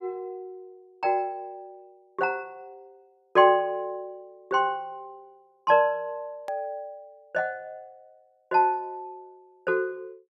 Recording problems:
edit click; at 6.5 s

